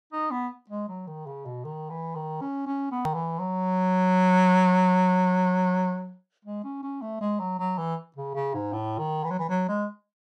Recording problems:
click at an edit; at 3 s

